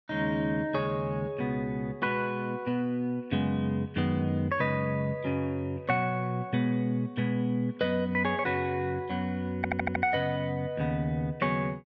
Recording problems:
treble missing; nothing above 8 kHz
stutter; at 9.5 s

